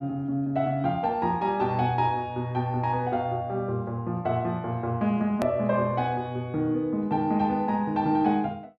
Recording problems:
hard cut with a click; at 5.5 s

